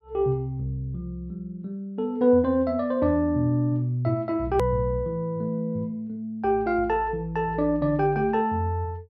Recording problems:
hard cut with a click; at 4.5 s

